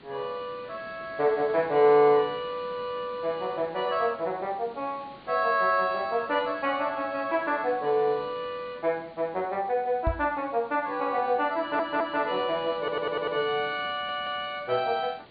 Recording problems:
low-pass filter; nothing above 4.6 kHz
background hiss; SNR 22 dB
microphone thump; at 10 s; peak +2 dB vs average level
stutter; at 12 s, at 13 s and at 14 s

